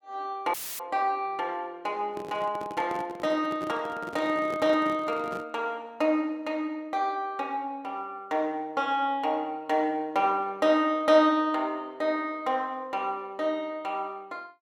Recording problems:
audio cutting out; at 0.5 s; filled with static
handling noise; from 2 to 5.5 s; peak -5 dB vs average level

